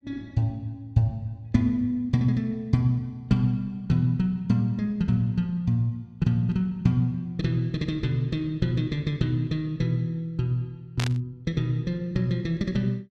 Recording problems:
static burst; at 11 s; peak -1 dB vs average level

